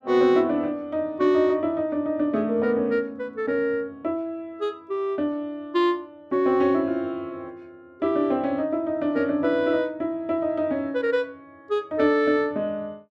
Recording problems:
none

